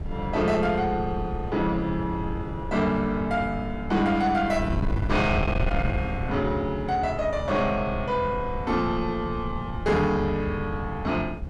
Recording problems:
distorted audio; soft clipping, signal-to-distortion ratio 12 dB
wind on the microphone; below 160 Hz, SNR 7 dB

